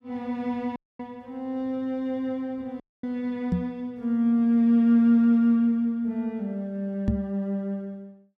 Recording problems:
audio cutting out; at 1 s and at 3 s
microphone thump; at 3.5 s and at 7 s; peak +3 dB vs average level

